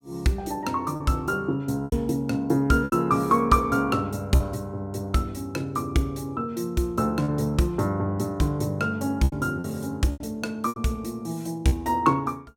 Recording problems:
packet loss; 5% of the sound replaced, filled with repeated pitch periods

